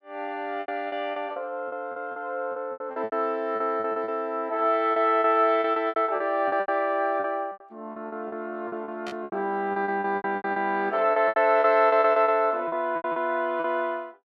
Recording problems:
packet loss; 17% of the sound replaced, filled with repeated pitch periods
static burst; at 9 s; peak -9 dB vs average level

